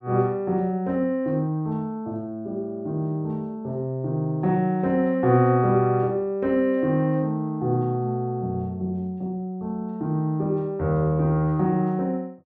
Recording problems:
none

